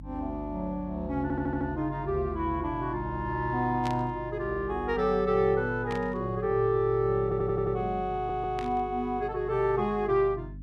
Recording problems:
hum; 50 Hz, harmonics up to 300 Hz, SNR 15 dB
audio stuttering; at 1 s, at 7 s and at 8 s
burst of static; at 4 s, at 6 s and at 8.5 s; peak -7 dB vs average level

